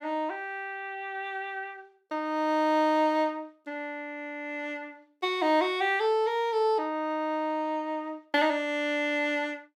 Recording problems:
none

